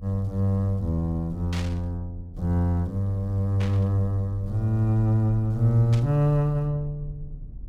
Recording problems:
rumble; below 62 Hz, strongest tone 34 Hz, SNR 17 dB
static burst; at 1.5 s, at 3.5 s and at 6 s; peak -8 dB vs average level

